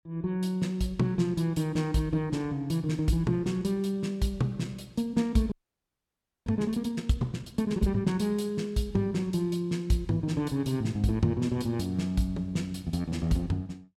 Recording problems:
frozen audio; at 5.5 s for 1 s

